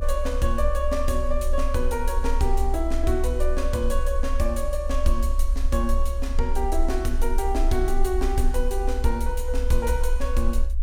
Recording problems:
low-frequency rumble; below 58 Hz, strongest tone 22 Hz, SNR 0 dB

